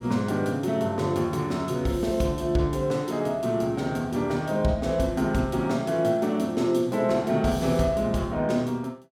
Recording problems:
none

